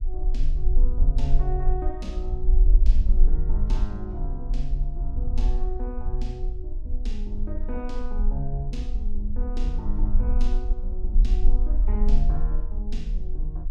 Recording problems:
low-frequency rumble; below 40 Hz, strongest tone 24 Hz, SNR -9 dB

